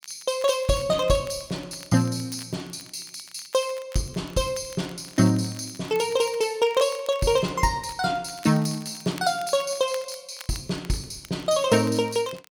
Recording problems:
crackling; vinyl, SNR 22 dB

